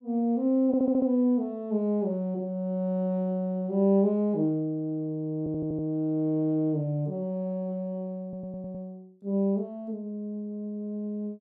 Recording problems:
stutter; at 0.5 s, at 5.5 s and at 8 s

